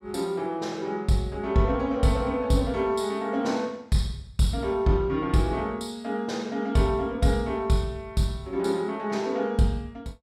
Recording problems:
none

